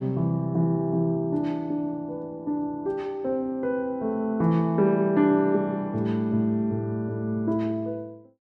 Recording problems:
none

